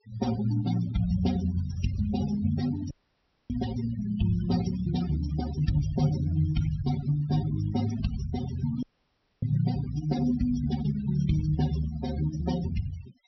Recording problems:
treble cut off; nothing above 5.7 kHz
denoising artefacts; signal-to-artefact ratio 13 dB
audio cutting out; at 3 s for 0.5 s and at 9 s for 0.5 s

